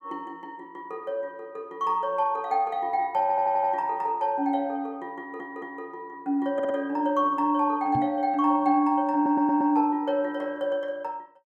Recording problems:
audio stuttering; 4 times, first at 3 s
microphone bump; at 8 s; peak -2 dB vs average level

